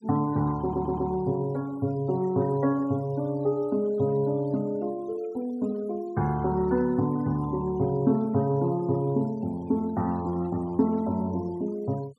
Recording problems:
noise reduction artefacts; signal-to-artefact ratio 26 dB
stutter; at 0.5 s

